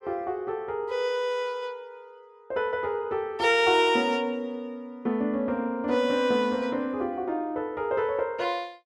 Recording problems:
none

